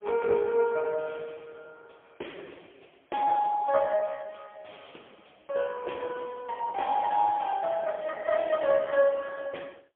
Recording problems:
telephone audio; 280 Hz to 3.4 kHz, AMR-NB, then MP3

